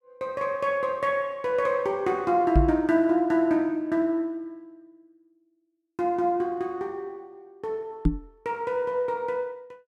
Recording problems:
microphone bump; at 2.5 s and at 8 s; peak +8 dB vs average level

